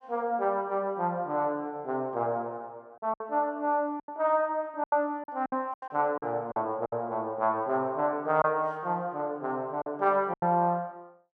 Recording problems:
lost packets; 7% of the sound replaced, filled with silence

